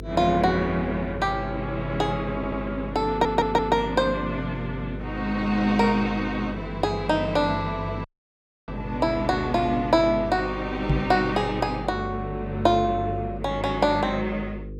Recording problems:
hum; 50 Hz, harmonics up to 500 Hz, SNR 12 dB
stutter; at 2.5 s and at 3 s
dropout; at 8 s for 0.5 s
microphone thump; at 11 s; peak +5 dB vs average level

